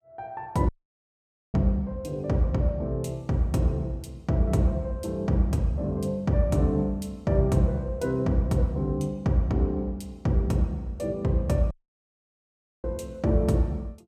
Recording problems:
audio cutting out; at 0.5 s for 1 s and at 12 s for 1 s

